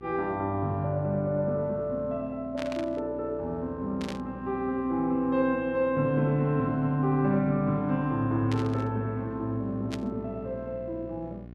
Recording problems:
electrical hum; 60 Hz, harmonics up to 780 Hz, SNR 17 dB
burst of static; 4 times, first at 2.5 s; peak -6 dB vs average level

